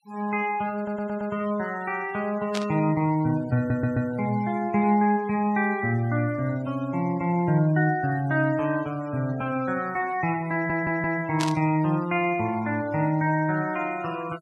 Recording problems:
noise reduction artefacts; signal-to-artefact ratio 22 dB
stutter; at 1 s, at 3.5 s and at 11 s
static burst; at 2.5 s and at 11 s; peak -3 dB vs average level

